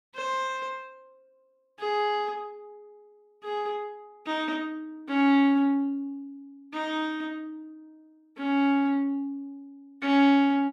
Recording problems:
none

